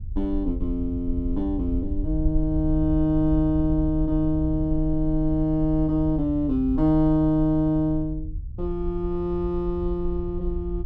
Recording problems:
rumble; below 62 Hz, SNR 8 dB

